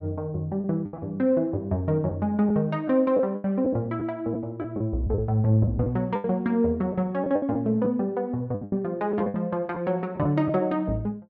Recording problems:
packet loss; 8% of the sound replaced, filled with the last packet

